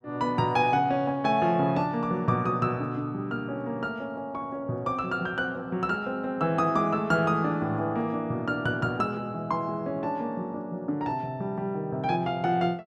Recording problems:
none

